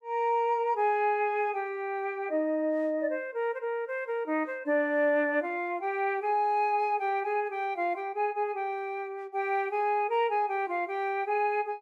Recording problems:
none

